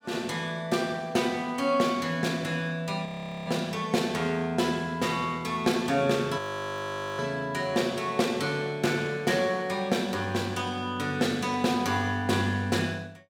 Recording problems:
frozen audio; at 3 s and at 6.5 s for 1 s

